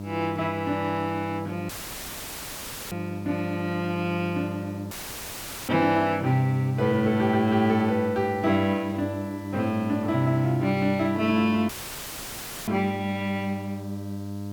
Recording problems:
mains hum; 50 Hz, harmonics up to 1 kHz, SNR 10 dB
background hiss; slope +2 dB per octave, SNR 28 dB
audio cutting out; at 1.5 s for 1 s, at 5 s for 1 s and at 12 s for 1 s; filled with static

